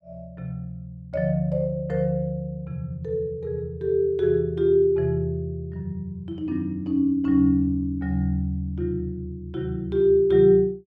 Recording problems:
none

